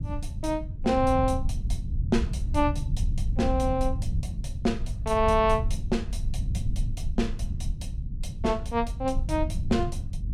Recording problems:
low-frequency rumble; below 94 Hz, SNR 4 dB

